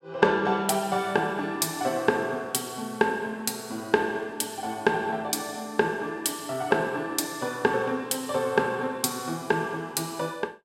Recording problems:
none

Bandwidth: 16 kHz